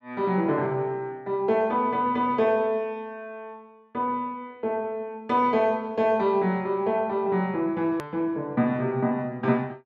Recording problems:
click at an edit; at 8 s

